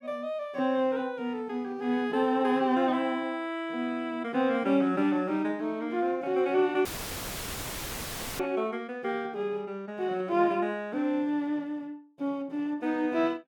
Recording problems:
dropout; at 7 s for 1.5 s; filled with static

